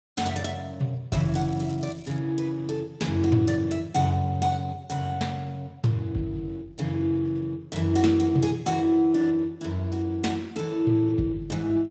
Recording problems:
codec artefacts; Speex, log-spectral distance 3 dB, nothing above 7.8 kHz
crackling; from 1 to 2 s; loose cable, SNR 25 dB

